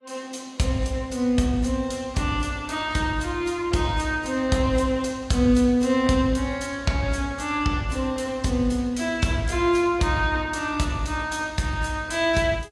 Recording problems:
codec artefacts; AAC, log-spectral distance 2 dB, nothing above 11 kHz

